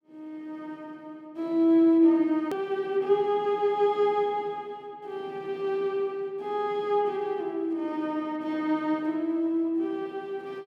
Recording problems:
edit click; at 2.5 s

